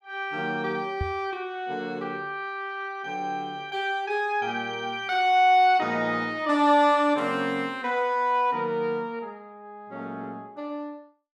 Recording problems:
knock on the microphone; at 1 s; peak -2 dB vs average level

